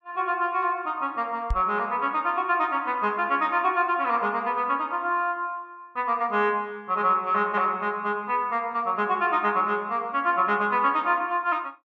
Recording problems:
microphone bump; at 1.5 s; peak 0 dB vs average level

